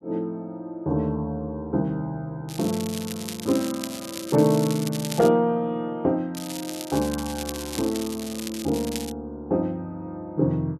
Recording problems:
crackle; from 2.5 to 5.5 s and from 6.5 to 9 s; loose cable, SNR 10 dB

